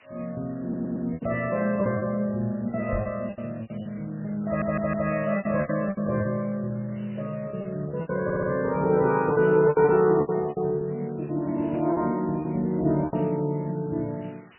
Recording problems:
codec artefacts; AAC, then MP3, log-spectral distance 6 dB, nothing above 2.7 kHz
hiss; SNR 28 dB
packet loss; 11% of the sound replaced, filled with repeated pitch periods
stutter; at 0.5 s, at 4.5 s and at 8 s
knock on the microphone; at 3 s; peak -1 dB vs average level

